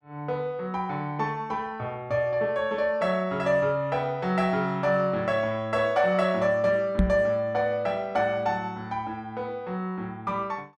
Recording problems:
microphone thump; at 7 s; peak +7 dB vs average level

